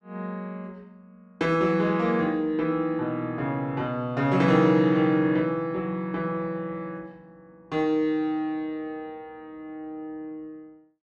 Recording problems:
none

